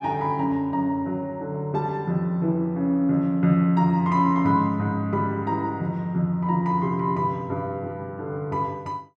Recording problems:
none

